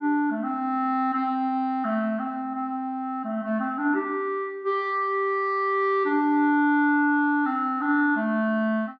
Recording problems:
none

